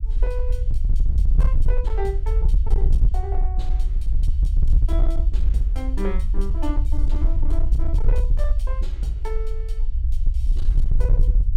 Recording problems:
distorted audio; hard clipping, signal-to-distortion ratio 12 dB
rumble; below 52 Hz, SNR -10 dB

